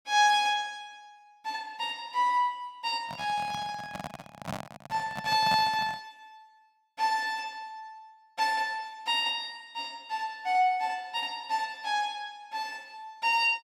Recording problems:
microphone handling noise; from 3 to 6 s; peak -2 dB vs average level

